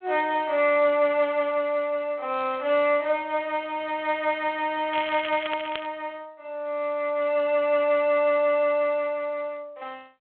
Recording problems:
phone line; 320 Hz to 3.5 kHz, G.726
crackling; at 5 s; loose cable, SNR 13 dB

